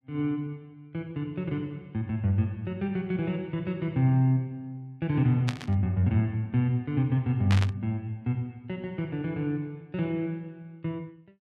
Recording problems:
static burst; at 5.5 s and at 7.5 s; peak 0 dB vs average level

